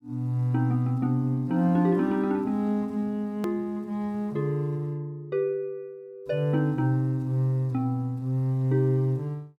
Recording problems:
edit click; at 3.5 s

